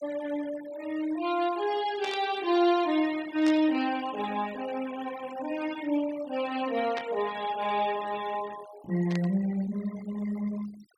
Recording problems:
denoising artefacts; signal-to-artefact ratio 17 dB
burst of static; 4 times, first at 2 s; peak -4 dB vs average level

